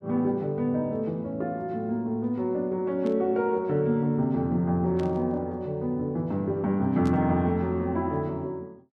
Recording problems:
burst of static; at 3 s, at 5 s and at 7 s; peak -14 dB vs average level

